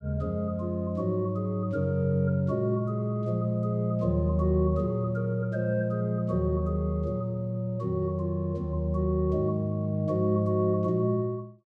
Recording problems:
none

